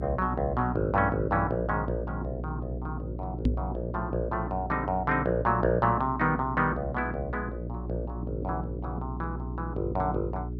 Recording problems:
hum; 60 Hz, harmonics up to 420 Hz, SNR 6 dB
knock on the microphone; at 3.5 s; peak +7 dB vs average level

